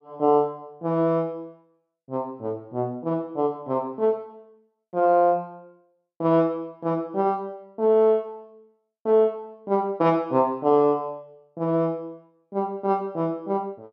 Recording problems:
none

